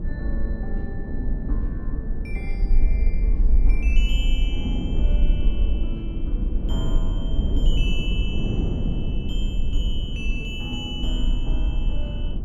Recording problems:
rumble; below 48 Hz, strongest tone 22 Hz, SNR -8 dB
wind noise; below 230 Hz, SNR -4 dB

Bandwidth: 17.5 kHz